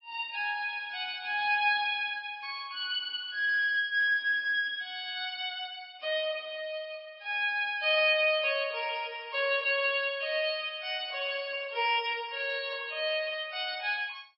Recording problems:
lossy codec; MP3, log-spectral distance 3 dB, nothing above 4.5 kHz

